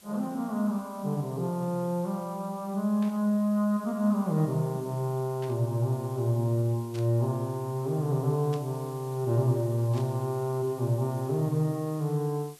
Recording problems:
hiss; slope 0 dB per octave, SNR 23 dB
burst of static; 5 times, first at 3 s; peak -12 dB vs average level

